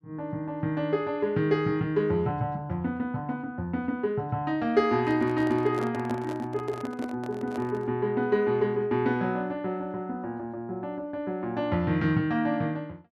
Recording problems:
microphone handling noise; from 5 to 8 s; peak -5 dB vs average level

